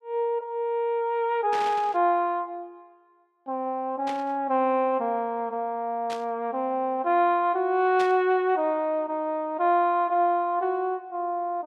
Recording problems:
static burst; 4 times, first at 1.5 s; peak -7 dB vs average level

